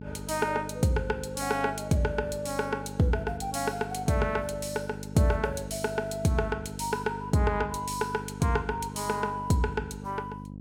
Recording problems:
hum; 50 Hz, harmonics up to 550 Hz, SNR 11 dB

